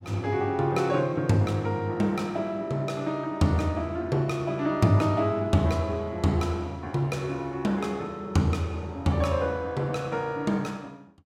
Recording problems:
none

